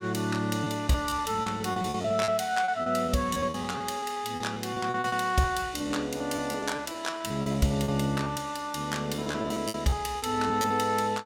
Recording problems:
packet loss; 14% of the sound replaced, filled with repeated pitch periods

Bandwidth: 17 kHz